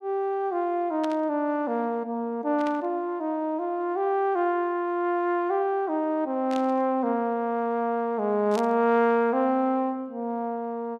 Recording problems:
burst of static; 4 times, first at 1 s; peak -9 dB vs average level

